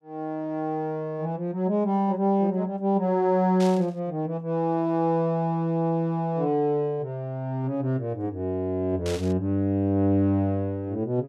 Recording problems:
static burst; at 3.5 s and at 9 s; peak -7 dB vs average level

